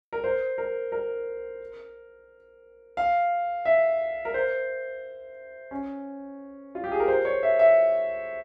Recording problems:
none

